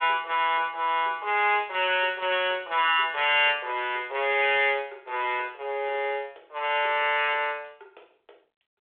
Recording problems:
phone line; 340 Hz to 3.6 kHz, G.726

